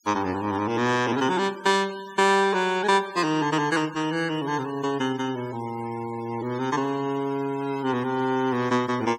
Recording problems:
denoising artefacts; signal-to-artefact ratio 19 dB

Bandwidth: 17 kHz